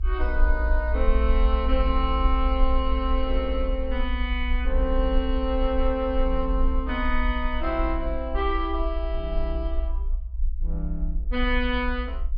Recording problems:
treble cut off; nothing above 5.5 kHz
low-frequency rumble; below 58 Hz, SNR 0 dB

